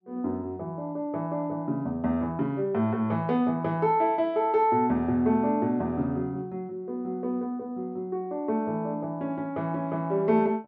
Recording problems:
none

